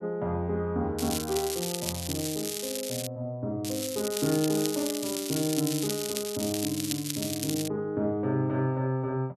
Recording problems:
crackling; from 1 to 3 s and from 3.5 to 7.5 s; loose cable, SNR 3 dB

